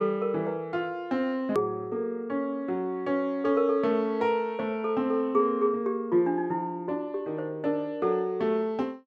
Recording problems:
click at an edit; at 1.5 s

